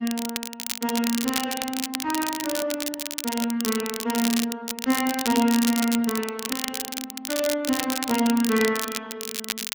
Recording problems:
codec artefacts; Speex, log-spectral distance 3 dB
crackling; vinyl, SNR 4 dB

